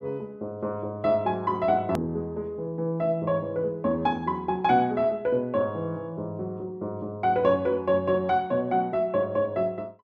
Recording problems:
edit click; at 2 s

